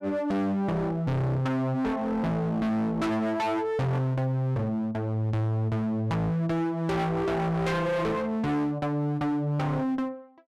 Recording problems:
distorted audio; hard clipping, uneven, signal-to-distortion ratio 6 dB

